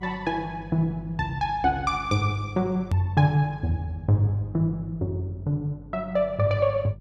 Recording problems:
hum; 50 Hz, harmonics up to 400 Hz, SNR 18 dB
click at an edit; at 3 s

